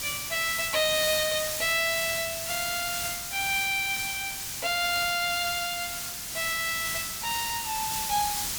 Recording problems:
background hiss; slope +2 dB per octave, SNR 3 dB

